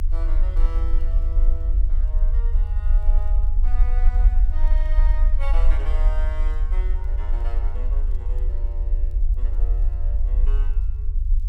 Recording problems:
low-frequency rumble; below 46 Hz, strongest tone 28 Hz, SNR -17 dB
wind on the microphone; below 320 Hz, SNR 15 dB
crackling; vinyl, SNR 28 dB

